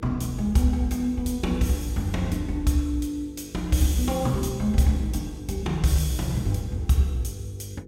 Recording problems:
mains hum; 50 Hz, harmonics up to 500 Hz, SNR 20 dB

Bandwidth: 16 kHz